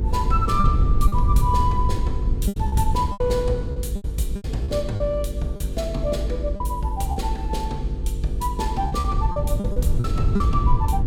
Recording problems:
electrical hum; 50 Hz, harmonics up to 500 Hz, SNR 8 dB
low-frequency rumble; below 82 Hz, SNR -2 dB
lost packets; 9% of the sound replaced, filled with repeated pitch periods

